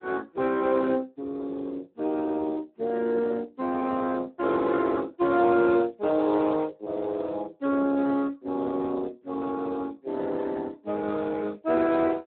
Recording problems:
telephone audio; 220 Hz to 3.1 kHz, Speex

